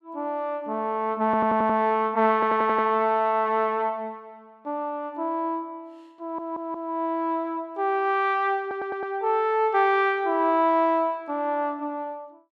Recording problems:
audio stuttering; 4 times, first at 1.5 s

